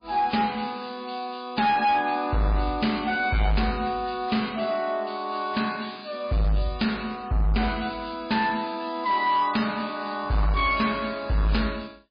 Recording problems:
lossy compression; MP3, log-spectral distance 6 dB, nothing above 4.2 kHz
distortion; hard clipping, signal-to-distortion ratio 10 dB

